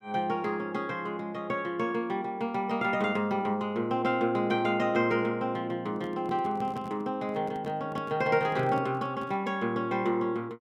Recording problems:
microphone handling noise; from 6 to 9.5 s; peak -6 dB vs average level

